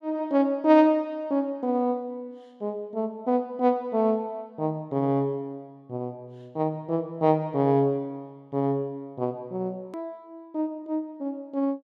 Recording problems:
edit click; at 10 s

